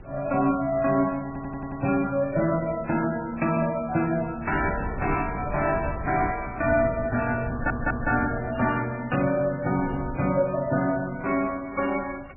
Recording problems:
lossy codec; MP3, log-spectral distance 3 dB, nothing above 2.4 kHz
wind noise; below 240 Hz, SNR 13 dB
stutter; at 1.5 s and at 7.5 s

